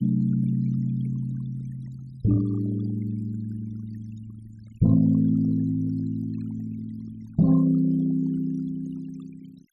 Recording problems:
noise reduction artefacts; signal-to-artefact ratio 21 dB

